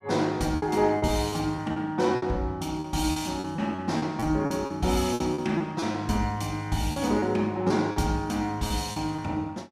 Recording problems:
lost packets; 10% of the sound replaced, filled with repeated pitch periods

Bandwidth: 14.5 kHz